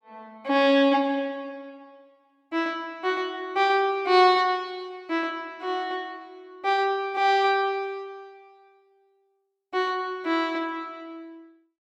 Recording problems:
none

